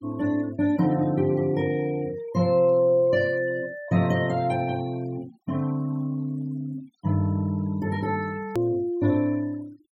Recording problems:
noise reduction artefacts; signal-to-artefact ratio 25 dB
hard cut with a click; at 8.5 s

